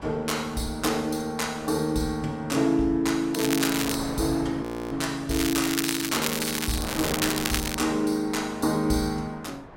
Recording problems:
wind on the microphone; below 1.2 kHz, SNR 14 dB
crackle; at 3.5 s and from 5.5 to 8 s; loose cable, SNR 3 dB
frozen audio; at 4.5 s

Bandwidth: 16 kHz